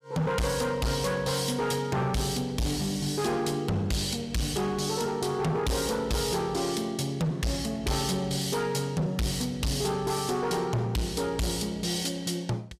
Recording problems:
distortion; hard clipping, signal-to-distortion ratio 6 dB

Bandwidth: 15 kHz